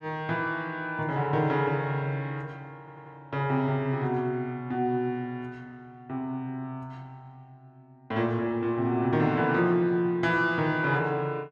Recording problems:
audio stuttering; at 3 s

